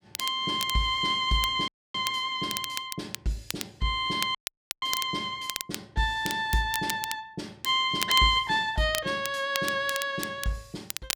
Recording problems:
crackling; vinyl, SNR 9 dB
audio cutting out; at 1.5 s and at 4.5 s

